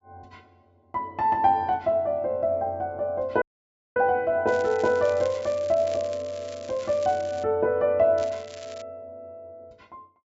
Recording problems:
low-pass filter; nothing above 8 kHz
audio cutting out; at 3.5 s for 0.5 s
crackling; from 4.5 to 7.5 s and at 8 s; loose cable, SNR 21 dB

